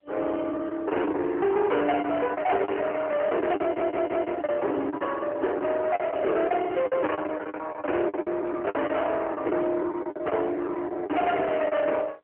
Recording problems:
phone line; 280 Hz to 3.5 kHz, AMR-NB
distortion; soft clipping, signal-to-distortion ratio 8 dB
packet loss; 14% of the sound replaced, filled with the last packet
stutter; at 3.5 s

